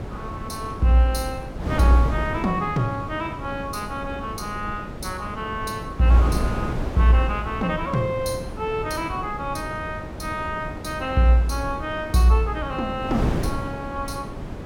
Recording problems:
wind noise; below 400 Hz, SNR 8 dB

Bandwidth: 17.5 kHz